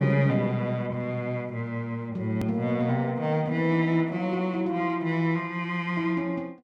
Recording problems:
edit click; at 2.5 s

